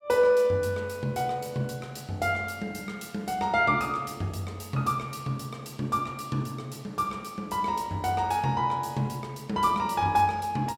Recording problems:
none

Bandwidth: 16.5 kHz